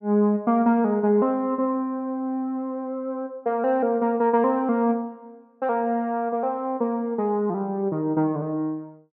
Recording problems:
none

